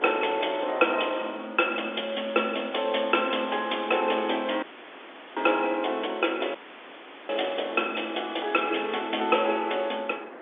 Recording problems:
phone line; 240 Hz to 3.6 kHz, G.711
wind on the microphone; below 1.3 kHz, SNR 18 dB
dropout; at 4.5 s for 0.5 s and at 6.5 s for 0.5 s

